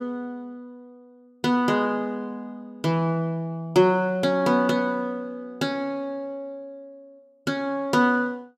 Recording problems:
none

